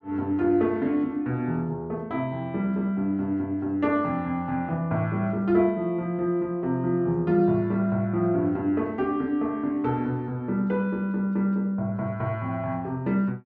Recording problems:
none

